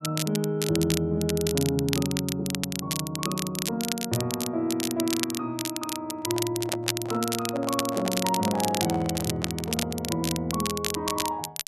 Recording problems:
crackling; vinyl, SNR 3 dB
microphone handling noise; from 6 to 10 s; peak -2 dB vs average level

